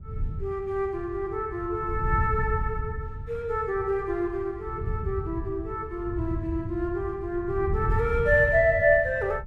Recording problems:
wind noise; below 110 Hz, SNR 7 dB

